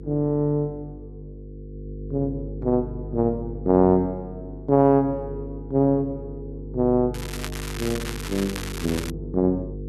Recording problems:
electrical hum; 50 Hz, harmonics up to 500 Hz, SNR 12 dB
crackling; from 7 to 9 s; loose cable, SNR 11 dB

